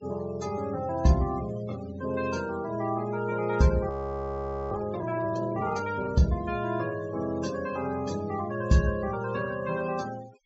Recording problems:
treble cut off; nothing above 8 kHz
noise reduction artefacts; signal-to-artefact ratio 19 dB
audio freezing; at 4 s for 1 s

